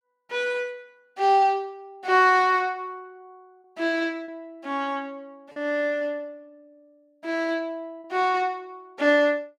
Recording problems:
lost packets; 1.6% of the sound replaced, filled with repeated pitch periods

